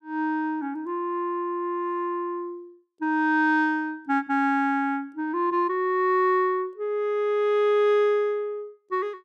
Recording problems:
none

